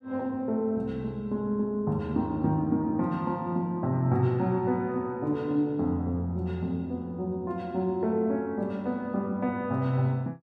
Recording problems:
none

